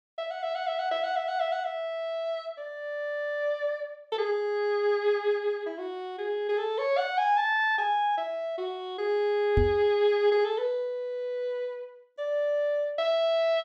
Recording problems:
microphone bump; at 9.5 s; peak +5 dB vs average level

